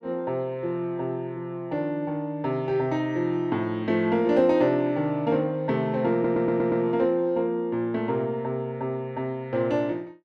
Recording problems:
stutter; at 6 s

